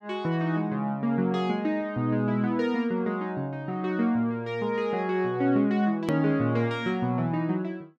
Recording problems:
click at an edit; at 6 s

